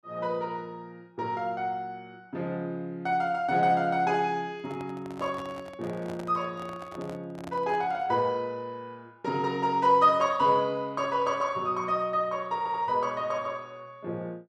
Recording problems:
handling noise; from 4.5 to 8 s; peak -10 dB vs average level
stutter; at 13 s

